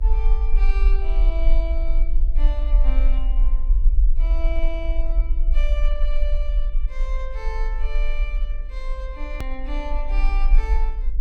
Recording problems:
hum; 50 Hz, harmonics up to 550 Hz, SNR 18 dB
rumble; below 42 Hz, SNR -12 dB
click at an edit; at 9.5 s

